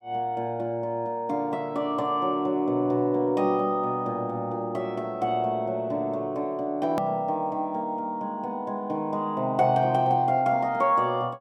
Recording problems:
click at an edit; at 7 s

